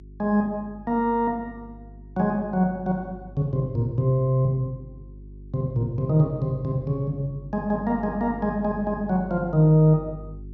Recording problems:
treble cut off; nothing above 8 kHz
hum; 50 Hz, harmonics up to 400 Hz, SNR 18 dB

